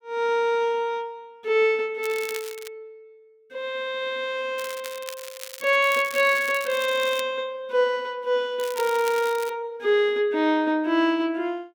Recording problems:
crackling; at 2 s, from 4.5 to 7 s and at 8.5 s; loose cable, SNR 15 dB

